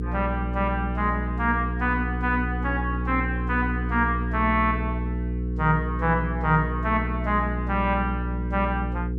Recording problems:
hum; 60 Hz, harmonics up to 480 Hz, SNR 3 dB

